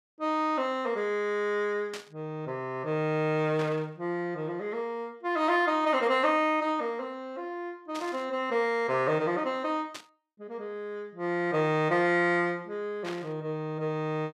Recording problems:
burst of static; 5 times, first at 2 s; peak -6 dB vs average level

